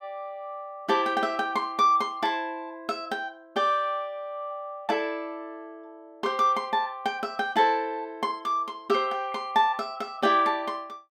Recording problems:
none

